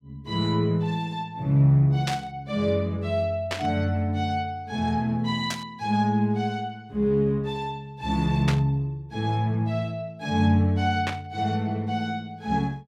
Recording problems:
static burst; 5 times, first at 2 s; peak 0 dB vs average level

